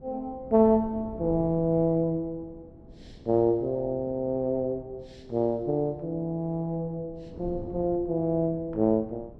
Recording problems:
wind on the microphone; below 280 Hz, SNR 19 dB

